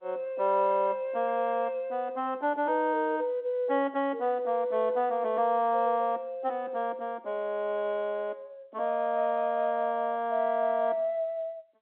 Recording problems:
phone line; 240 Hz to 3.5 kHz, G.711

